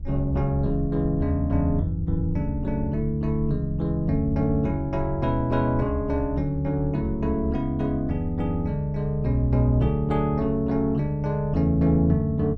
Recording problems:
rumble; below 76 Hz, SNR 10 dB

